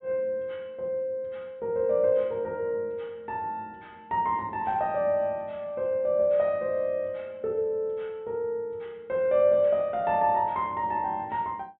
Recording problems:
treble missing; nothing above 4 kHz

